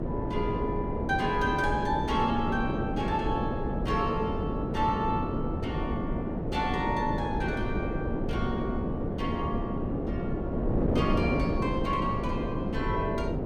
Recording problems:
wind on the microphone; below 410 Hz, SNR -1 dB

